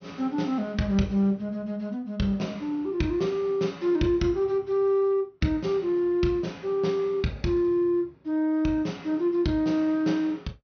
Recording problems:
low-pass filter; nothing above 6.2 kHz

